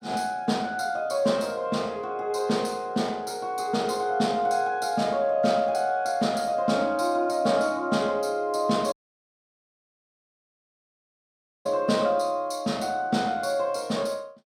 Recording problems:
dropout; at 9 s for 2.5 s

